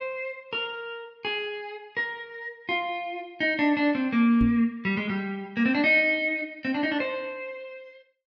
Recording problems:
microphone thump; at 4.5 s; peak +1 dB vs average level

